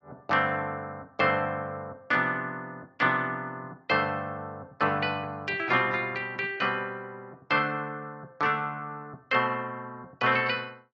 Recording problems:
lossy codec; AAC, log-spectral distance 2 dB

